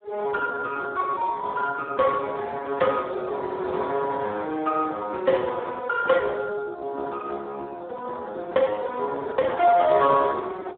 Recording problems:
phone line; 280 Hz to 2.8 kHz, Speex

